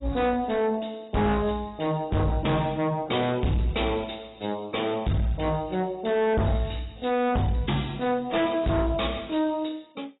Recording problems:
codec artefacts; AAC, log-spectral distance 5 dB, nothing above 3.8 kHz
distortion; soft clipping, signal-to-distortion ratio 6 dB

